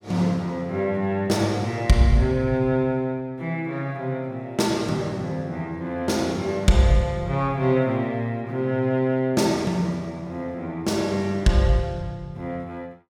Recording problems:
none

